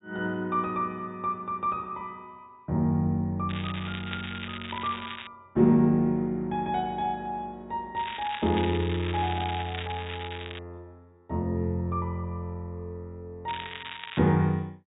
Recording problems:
treble missing; nothing above 4 kHz
crackling; from 3.5 to 5.5 s, from 8 to 11 s and at 13 s; loose cable, SNR 10 dB

